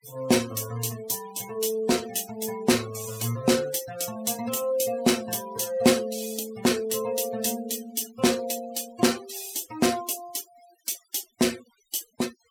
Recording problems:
noise reduction artefacts; signal-to-artefact ratio 16 dB

